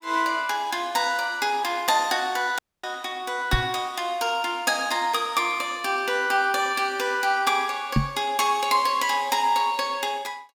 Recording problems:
audio cutting out; at 2.5 s
knock on the microphone; at 3.5 s and at 8 s; peak +6 dB vs average level

